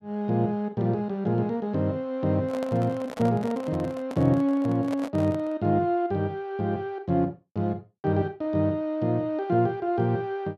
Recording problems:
microphone handling noise; from 2.5 to 5.5 s; peak -5 dB vs average level

